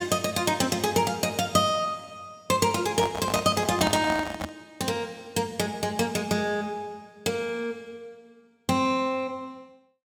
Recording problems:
microphone handling noise; from 3 to 4.5 s; peak +1 dB vs average level

